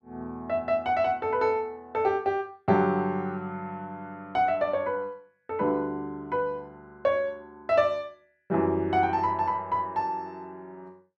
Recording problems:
none

